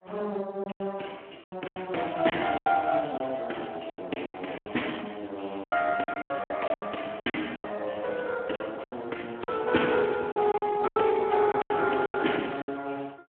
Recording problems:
telephone audio; 240 Hz to 3.3 kHz, Speex
lost packets; 14% of the sound replaced, filled with silence

